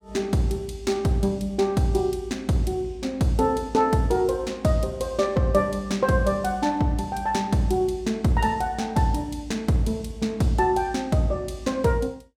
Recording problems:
none

